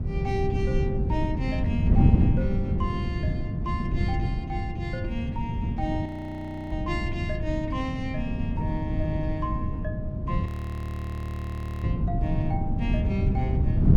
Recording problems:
wind on the microphone; below 170 Hz, SNR -6 dB
frozen audio; at 6 s for 0.5 s and at 10 s for 1.5 s

